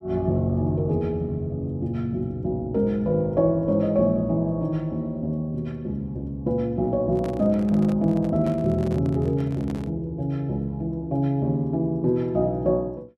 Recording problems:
microphone handling noise; from 7 to 10 s; peak -8 dB vs average level

